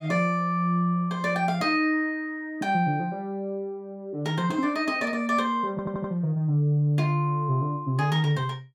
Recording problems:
stutter; at 5.5 s

